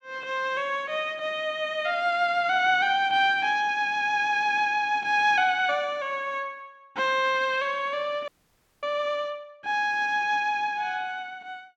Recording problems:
audio freezing; at 8.5 s for 0.5 s

